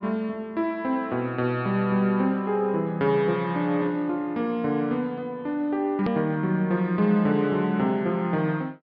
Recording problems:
treble cut off; nothing above 5.5 kHz
hard cut with a click; at 6 s

